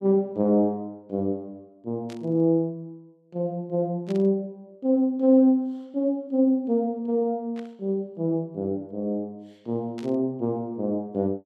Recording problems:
static burst; 4 times, first at 2 s; peak -15 dB vs average level

